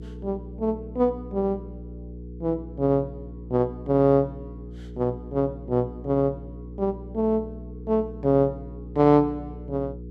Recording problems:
electrical hum; 60 Hz, harmonics up to 480 Hz, SNR 14 dB

